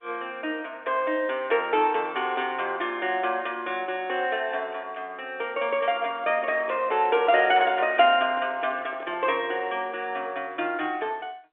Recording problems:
phone line; 320 Hz to 3.6 kHz, G.711
handling noise; from 5.5 to 9.5 s; peak -13 dB vs average level

